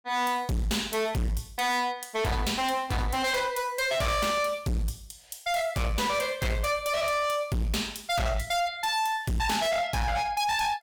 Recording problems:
distortion; hard clipping, signal-to-distortion ratio 6 dB

